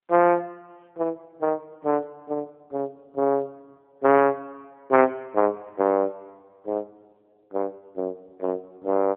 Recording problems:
phone line; 220 Hz to 2.7 kHz, AMR-NB

